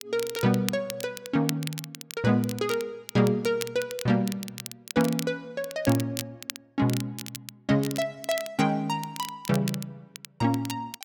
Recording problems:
crackle; vinyl, SNR 11 dB

